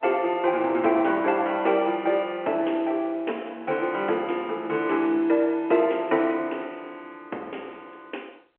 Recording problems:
phone line; 280 Hz to 3.8 kHz, G.711

